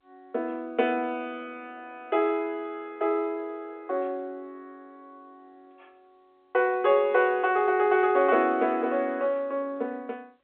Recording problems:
phone line; 320 Hz to 3.6 kHz, G.711

